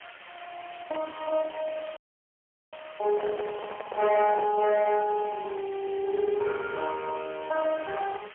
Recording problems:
telephone audio; 320 Hz to 3.8 kHz, AMR-NB, then MP3
distortion; hard clipping, signal-to-distortion ratio 10 dB
background hiss; SNR 19 dB
audio freezing; at 2 s for 1 s
microphone handling noise; from 3 to 4.5 s; peak -2 dB vs average level

